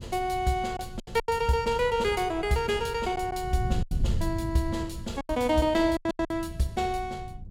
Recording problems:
wind on the microphone; below 120 Hz, SNR 9 dB
lost packets; 8% of the sound replaced, filled with silence

